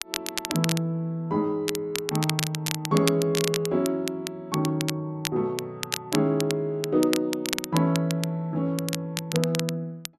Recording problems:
crackle; vinyl, SNR 6 dB

